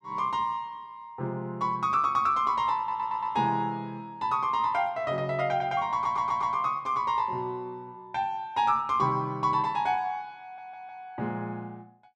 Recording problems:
audio stuttering; at 3 s, at 6 s and at 10 s

